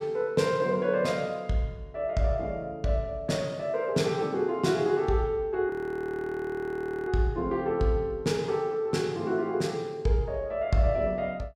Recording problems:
frozen audio; at 5.5 s for 1.5 s

